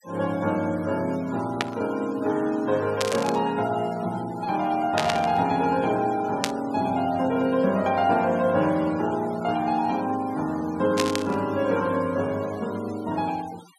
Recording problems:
noise reduction artefacts; signal-to-artefact ratio 21 dB
burst of static; 5 times, first at 1.5 s; peak +4 dB vs average level

